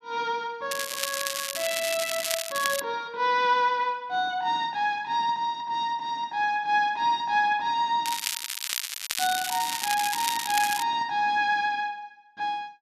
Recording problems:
crackling; from 0.5 to 3 s and from 8 to 11 s; loose cable, SNR 3 dB

